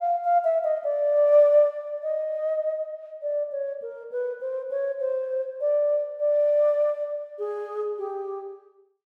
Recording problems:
none

